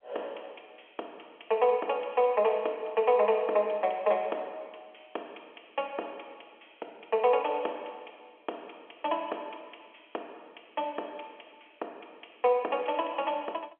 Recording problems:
phone line; 340 Hz to 3.3 kHz, G.711

